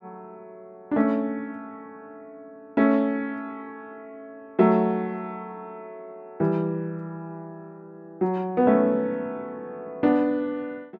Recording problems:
none

